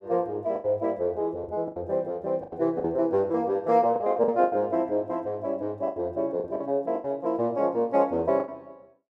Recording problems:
lost packets; 10% of the sound replaced, filled with the last packet

